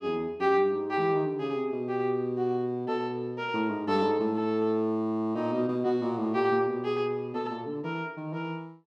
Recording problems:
none

